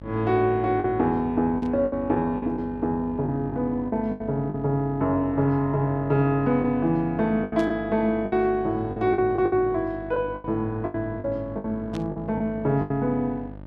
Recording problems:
hum; 50 Hz, harmonics up to 950 Hz, SNR 16 dB
lost packets; 9% of the sound replaced, filled with the last packet
burst of static; at 1.5 s, at 7.5 s and at 12 s; peak -12 dB vs average level

